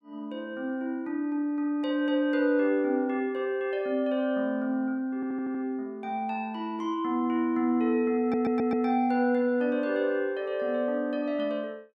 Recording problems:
audio stuttering; at 5 s and at 8 s

